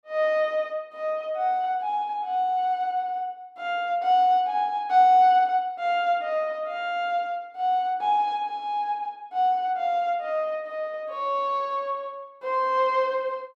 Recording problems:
none

